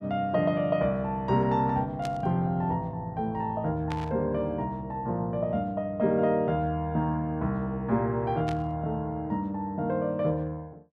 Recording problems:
burst of static; at 2 s, at 4 s and at 8.5 s; peak -6 dB vs average level

